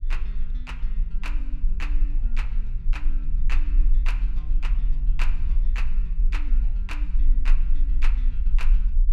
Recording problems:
rumble; below 36 Hz, strongest tone 20 Hz, SNR -14 dB

